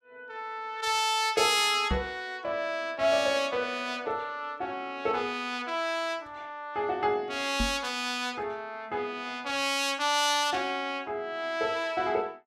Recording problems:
microphone bump; at 2 s and at 7.5 s; peak +2 dB vs average level

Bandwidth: 15.5 kHz